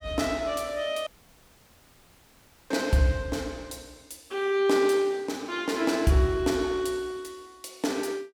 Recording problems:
audio cutting out; at 1 s for 1.5 s

